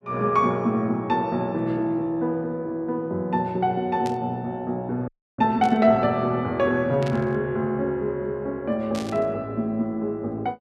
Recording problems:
static burst; 4 times, first at 4 s; peak -9 dB vs average level
frozen audio; at 5 s

